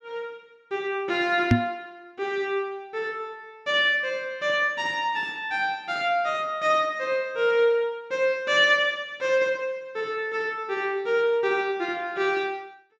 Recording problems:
microphone bump; at 1.5 s; peak +9 dB vs average level

